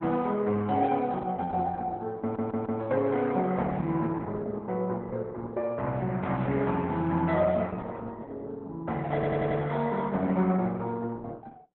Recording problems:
codec artefacts; Opus, log-spectral distance 3 dB, nothing above 3.6 kHz
audio stuttering; at 2 s and at 9 s

